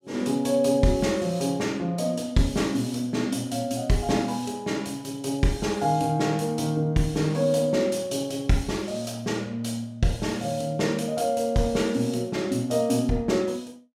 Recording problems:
none

